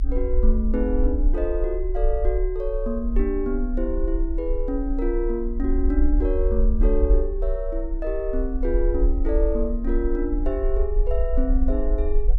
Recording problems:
low-frequency rumble; below 48 Hz, strongest tone 30 Hz, SNR 0 dB

